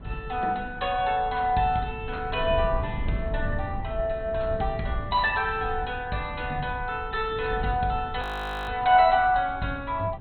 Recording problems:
codec artefacts; MP2, log-spectral distance 2 dB, nothing above 4 kHz
rumble; below 110 Hz, SNR 11 dB
frozen audio; at 8 s

